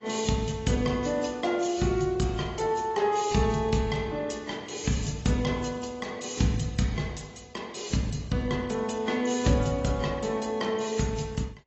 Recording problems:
lossy compression; AAC, log-spectral distance 5 dB, nothing above 7.3 kHz

